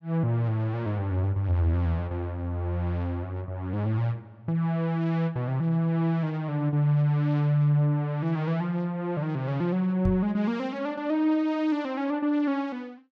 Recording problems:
knock on the microphone; at 10 s; peak +2 dB vs average level

